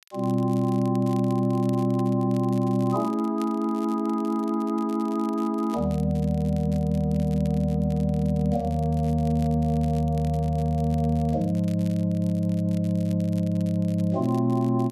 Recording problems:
crackle; vinyl, SNR 26 dB

